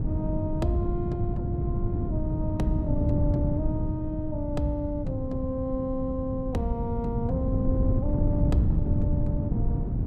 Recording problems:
wind on the microphone; below 160 Hz, SNR -3 dB

